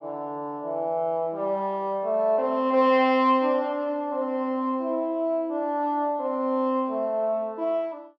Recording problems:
none

